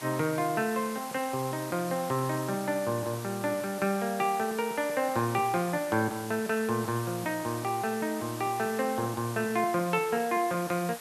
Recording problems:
background hiss; SNR 12 dB

